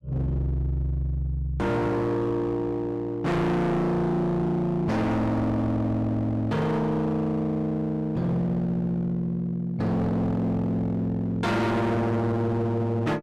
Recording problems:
distorted audio; hard clipping, uneven, signal-to-distortion ratio 6 dB

